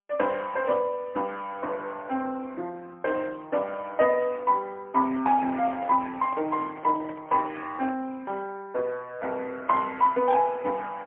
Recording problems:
telephone audio; 220 Hz to 3.2 kHz, AMR-NB, then MP3
handling noise; from 5 to 8 s; peak -8 dB vs average level

